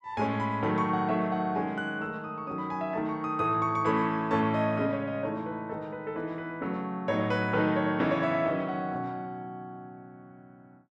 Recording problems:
none

